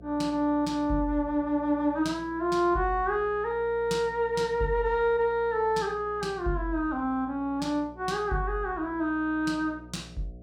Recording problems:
electrical hum; 60 Hz, harmonics up to 720 Hz, SNR 21 dB

